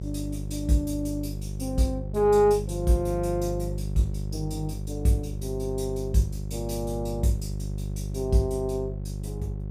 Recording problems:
hum; 50 Hz, harmonics up to 550 Hz, SNR 6 dB

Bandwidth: 15.5 kHz